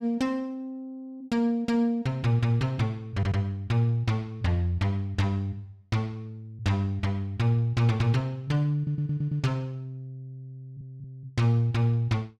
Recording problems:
audio stuttering; at 3 s, at 9 s and at 11 s

